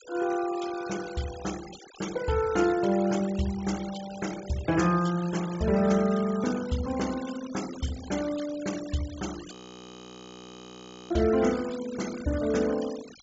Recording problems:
low-pass filter; nothing above 8 kHz
noise reduction artefacts; signal-to-artefact ratio 15 dB
audio freezing; at 9.5 s for 1.5 s

